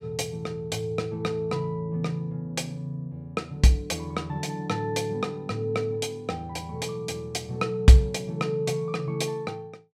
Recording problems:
none

